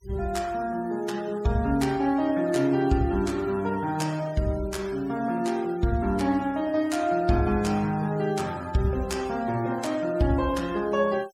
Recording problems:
denoising artefacts; signal-to-artefact ratio 22 dB

